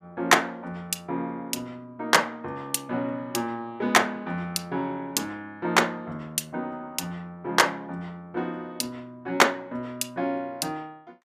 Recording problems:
none

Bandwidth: 15 kHz